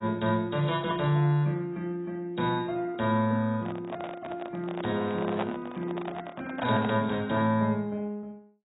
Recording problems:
lossy codec; AAC, log-spectral distance 3 dB, nothing above 3.8 kHz
handling noise; from 3.5 to 7 s; peak +1 dB vs average level

